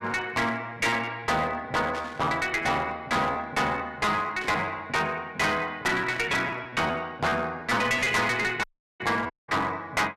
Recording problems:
distortion; hard clipping, uneven, signal-to-distortion ratio 6 dB
lost packets; 6% of the sound replaced, filled with repeated pitch periods
static burst; 4 times, first at 2 s; peak -9 dB vs average level
dropout; at 8.5 s and at 9.5 s

